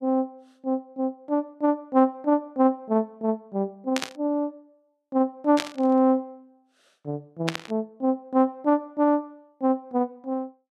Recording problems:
burst of static; at 4 s, at 5.5 s and at 7.5 s; peak +2 dB vs average level

